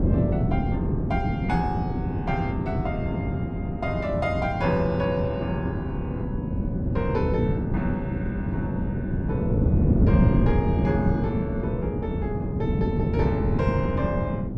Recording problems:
wind noise; below 240 Hz, SNR -3 dB

